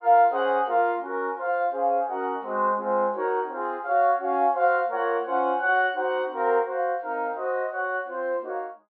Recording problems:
treble cut off; nothing above 5.5 kHz

